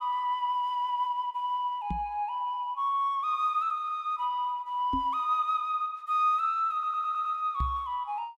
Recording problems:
microphone thump; at 2 s, at 5 s and at 7.5 s; peak 0 dB vs average level
stutter; at 6.5 s

